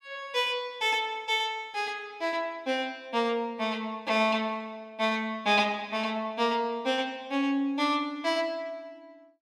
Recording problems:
none

